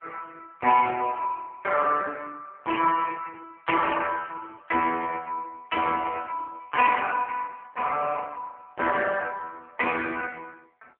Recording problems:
telephone audio; 280 Hz to 3.2 kHz, AMR-NB

